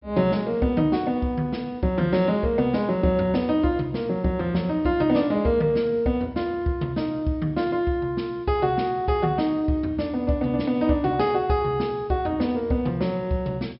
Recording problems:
treble cut off; nothing above 5.3 kHz

